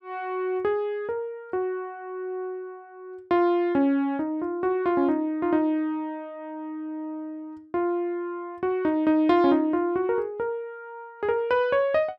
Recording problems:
none

